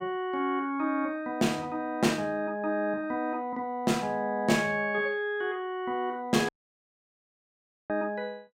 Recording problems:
audio cutting out; at 6.5 s for 1.5 s

